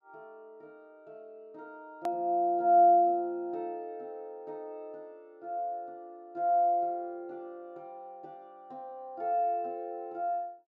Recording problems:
edit click; at 2 s

